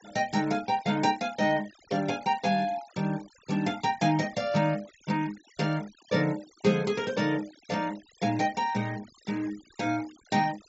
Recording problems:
low-pass filter; nothing above 8 kHz
noise reduction artefacts; signal-to-artefact ratio 20 dB

